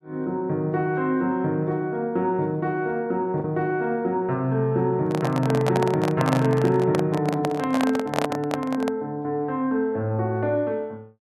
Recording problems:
lost packets; 0.4% of the sound replaced, filled with the last packet
handling noise; from 5 to 9 s; peak +4 dB vs average level

